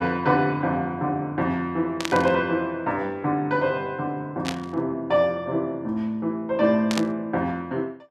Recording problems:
burst of static; at 2 s, at 4.5 s and at 7 s; peak +1 dB vs average level

